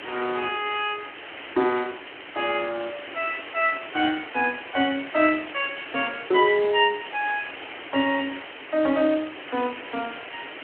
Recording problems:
phone line; 260 Hz to 3.3 kHz, Speex
hiss; SNR 12 dB

